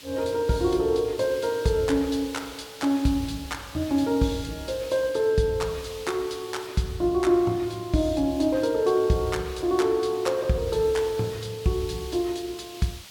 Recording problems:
background hiss; SNR 17 dB

